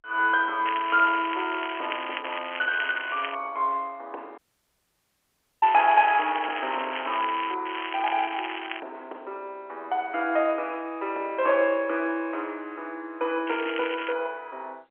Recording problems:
telephone audio; 340 Hz to 3.3 kHz, G.711
crackling; 4 times, first at 0.5 s; loose cable, SNR 9 dB
audio cutting out; at 4.5 s for 1 s

